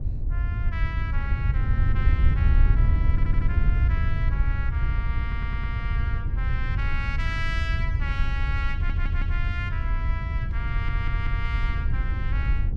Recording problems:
wind noise; below 84 Hz, SNR -9 dB
stutter; 4 times, first at 3 s

